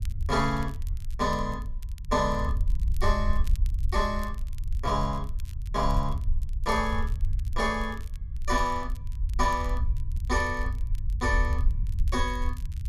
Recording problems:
rumble; below 66 Hz, SNR 2 dB
crackling; vinyl, SNR 25 dB

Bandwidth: 14.5 kHz